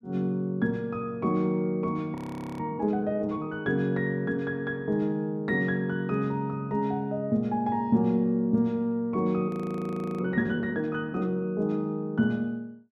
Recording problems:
audio freezing; at 2 s and at 9.5 s for 0.5 s

